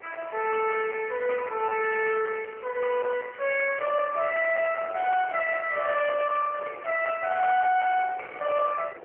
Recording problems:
telephone audio; 340 Hz to 2.9 kHz, AMR-NB
distortion; soft clipping, signal-to-distortion ratio 10 dB
wind on the microphone; below 1.4 kHz, SNR 17 dB

